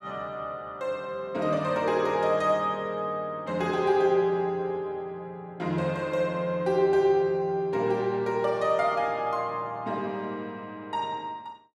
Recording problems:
none

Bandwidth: 13.5 kHz